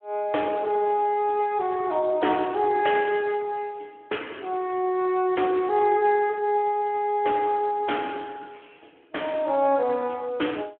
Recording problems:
phone line; 260 Hz to 3.3 kHz, Speex

